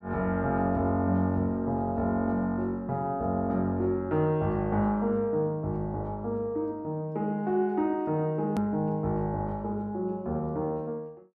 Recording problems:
click at an edit; at 8.5 s

